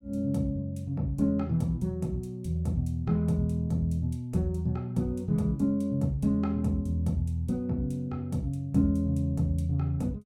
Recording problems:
none

